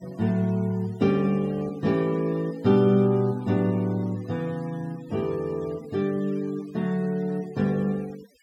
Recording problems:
denoising artefacts; signal-to-artefact ratio 24 dB

